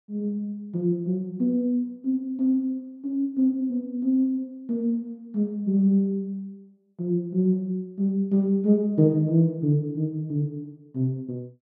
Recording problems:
none

